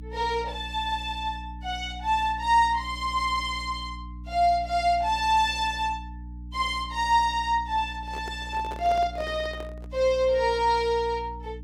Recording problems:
electrical hum; 60 Hz, harmonics up to 300 Hz, SNR 14 dB
handling noise; from 8 to 10 s; peak -9 dB vs average level

